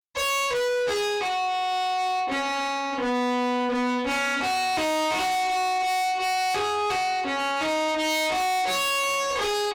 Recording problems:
distorted audio; soft clipping, signal-to-distortion ratio 6 dB

